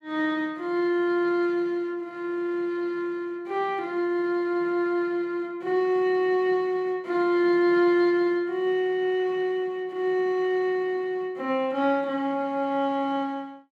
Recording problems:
none

